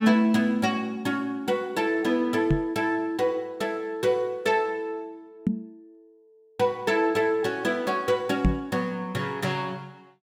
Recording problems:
knock on the microphone; at 2.5 s, at 5.5 s and at 8.5 s; peak +7 dB vs average level

